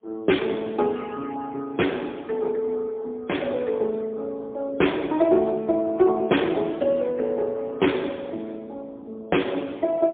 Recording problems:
phone line; 190 Hz to 3.5 kHz, AMR-NB, then MP3

